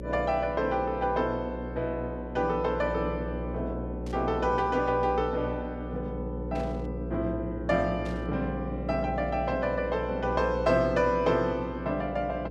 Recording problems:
hum; 60 Hz, harmonics up to 540 Hz, SNR 7 dB
static burst; at 4 s, at 6.5 s and at 8 s; peak -14 dB vs average level

